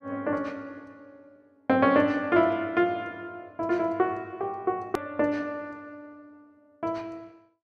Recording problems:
edit click; at 5 s

